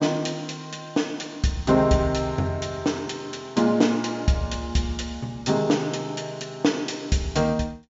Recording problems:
treble cut off; nothing above 7.4 kHz

